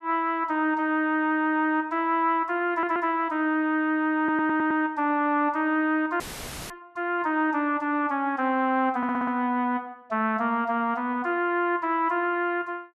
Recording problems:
audio stuttering; at 2.5 s, at 4 s and at 9 s
dropout; at 6 s for 0.5 s; filled with static

